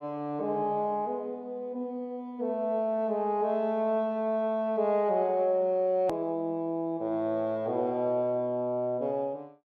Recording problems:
click at an edit; at 6 s

